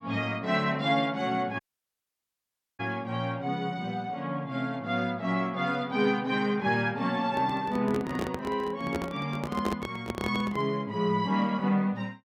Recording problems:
dropout; at 1.5 s for 1 s
microphone handling noise; from 7.5 to 11 s; peak +1 dB vs average level

